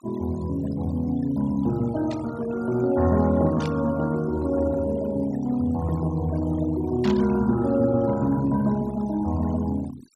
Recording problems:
noise reduction artefacts; signal-to-artefact ratio 19 dB
static burst; at 2 s, at 3.5 s and at 7 s; peak -9 dB vs average level

